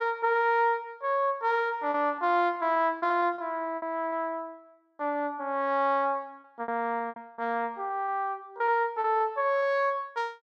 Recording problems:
lost packets; 7% of the sound replaced, filled with repeated pitch periods

